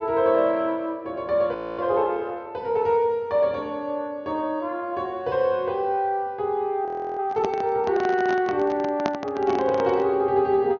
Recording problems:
treble missing; nothing above 6.6 kHz
audio freezing; at 1.5 s and at 7 s
microphone handling noise; from 7.5 to 10 s; peak +1 dB vs average level

